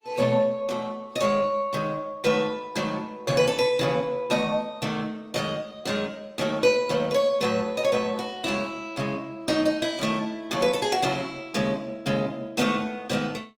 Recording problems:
lossy compression; Opus, log-spectral distance 3 dB, nothing above 19 kHz

